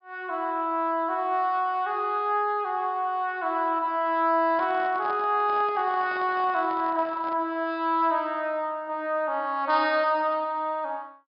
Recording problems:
low-pass filter; nothing above 5.5 kHz
microphone handling noise; from 4.5 to 7.5 s; peak -11 dB vs average level

